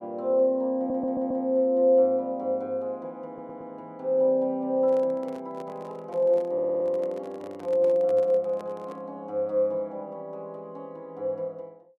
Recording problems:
audio stuttering; at 1 s, at 3.5 s and at 6.5 s
microphone handling noise; from 5 to 9 s; peak -12 dB vs average level

